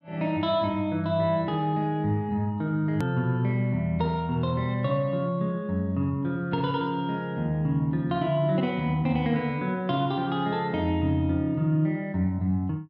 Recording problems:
click at an edit; at 3 s

